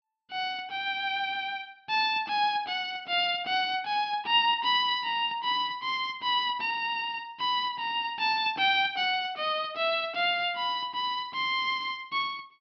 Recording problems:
low-pass filter; nothing above 5.5 kHz

